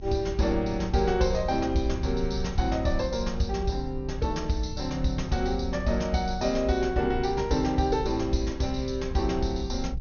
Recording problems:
treble cut off; nothing above 6.6 kHz
rumble; below 72 Hz, SNR 9 dB

